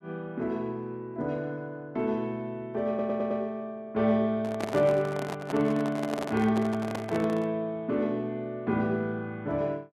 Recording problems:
stutter; at 3 s
handling noise; from 4.5 to 7.5 s; peak 0 dB vs average level

